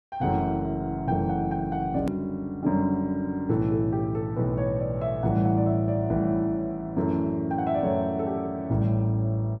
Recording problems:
edit click; at 2 s

